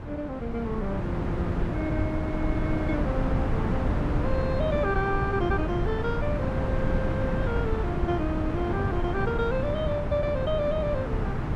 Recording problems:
wind noise; below 300 Hz, SNR -2 dB

